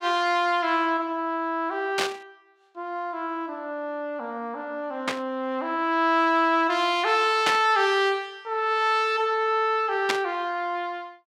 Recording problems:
static burst; 4 times, first at 2 s; peak +4 dB vs average level

